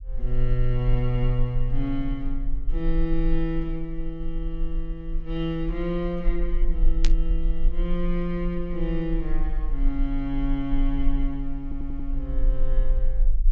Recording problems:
low-pass filter; nothing above 8 kHz
low-frequency rumble; below 34 Hz, strongest tone 20 Hz, SNR 0 dB
static burst; at 7 s; peak +2 dB vs average level
stutter; at 12 s

